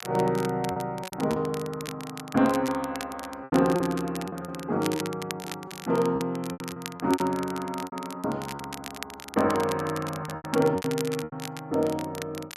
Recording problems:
crackle; vinyl, SNR 12 dB
lost packets; 11% of the sound replaced, filled with repeated pitch periods

